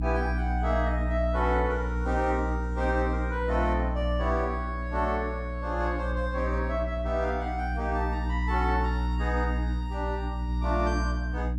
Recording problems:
hum; 60 Hz, harmonics up to 300 Hz, SNR 0 dB

